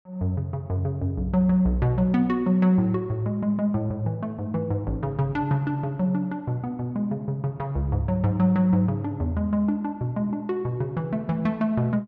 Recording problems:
none

